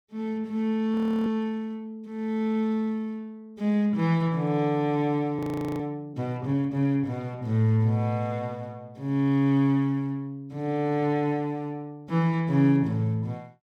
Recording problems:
frozen audio; at 1 s and at 5.5 s

